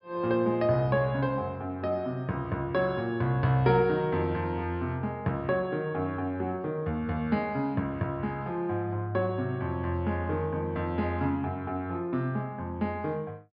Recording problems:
low-pass filter; nothing above 5.5 kHz

